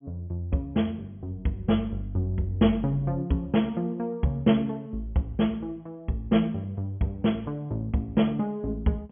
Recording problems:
low-pass filter; nothing above 3.4 kHz

